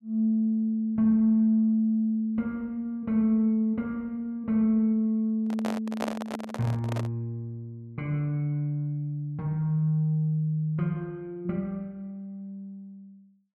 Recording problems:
microphone handling noise; from 5.5 to 7 s; peak +1 dB vs average level

